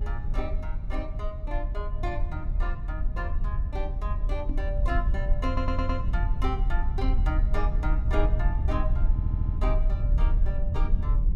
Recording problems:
low-frequency rumble; below 64 Hz, SNR -7 dB
knock on the microphone; at 4.5 s; peak +2 dB vs average level
stutter; at 5.5 s and at 9 s

